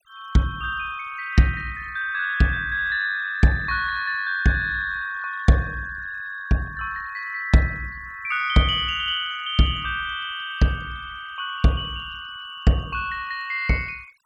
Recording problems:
noise reduction artefacts; signal-to-artefact ratio 23 dB

